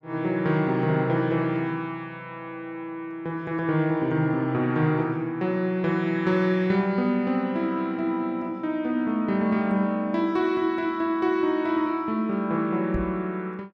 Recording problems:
knock on the microphone; at 13 s; peak -3 dB vs average level

